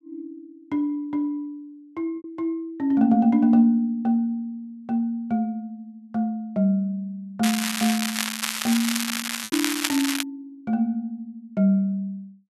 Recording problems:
lost packets; 1.4% of the sound replaced, filled with repeated pitch periods
crackle; from 7.5 to 10 s; loose cable, SNR 2 dB

